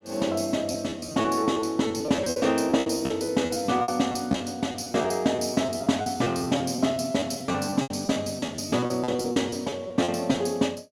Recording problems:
packet loss; 16% of the sound replaced, filled with repeated pitch periods

